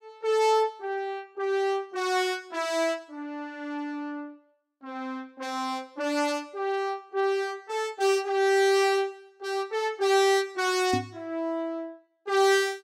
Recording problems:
microphone thump; at 11 s; peak +1 dB vs average level

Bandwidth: 16.5 kHz